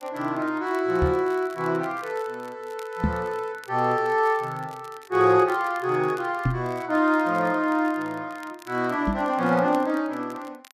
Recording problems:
crackling; vinyl, SNR 27 dB
knock on the microphone; 4 times, first at 1 s; peak +5 dB vs average level

